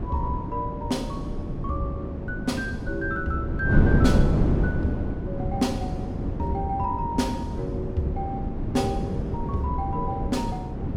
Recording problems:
wind on the microphone; below 250 Hz, SNR -2 dB

